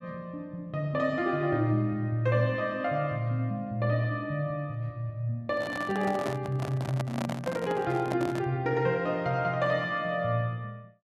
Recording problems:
handling noise; from 5.5 to 8.5 s; peak -1 dB vs average level

